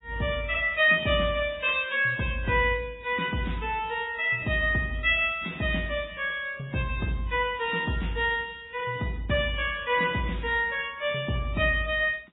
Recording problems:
lossy compression; AAC, then MP3, log-spectral distance 4 dB, nothing above 3.1 kHz

